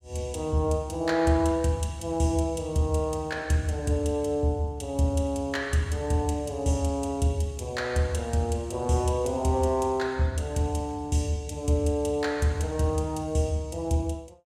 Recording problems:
none

